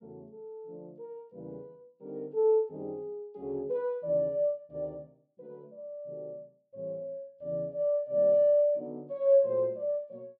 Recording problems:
none

